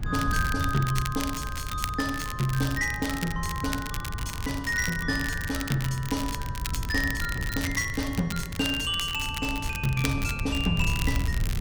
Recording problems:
hum; 50 Hz, harmonics up to 450 Hz, SNR 21 dB
rumble; below 120 Hz, SNR 6 dB
crackle; vinyl, SNR 9 dB

